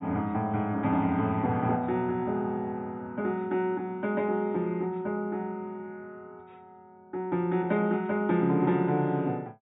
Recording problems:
treble cut off; nothing above 4 kHz

